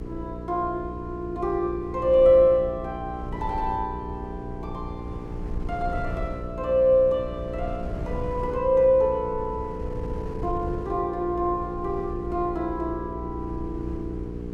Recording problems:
hum; 60 Hz, harmonics up to 480 Hz, SNR 12 dB
wind noise; below 120 Hz, SNR 14 dB

